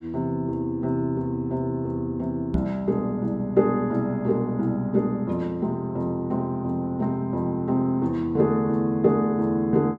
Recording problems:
microphone thump; at 2.5 s; peak +2 dB vs average level

